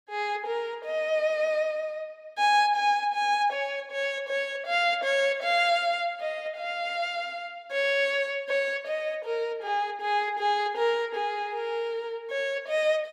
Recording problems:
none

